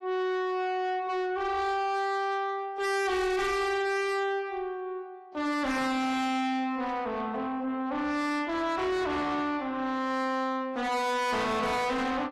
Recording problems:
codec artefacts; AAC, log-spectral distance 2 dB, nothing above 13.1 kHz
distorted audio; soft clipping, signal-to-distortion ratio 6 dB

